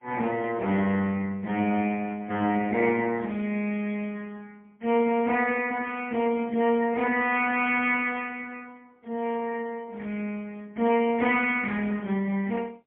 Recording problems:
telephone audio; 150 Hz to 3.2 kHz, AMR-NB, then MP3

